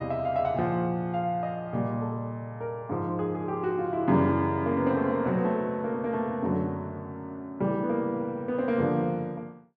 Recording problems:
none

